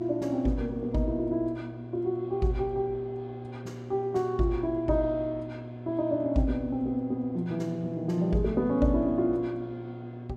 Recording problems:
hum; 60 Hz, harmonics up to 960 Hz, SNR 12 dB

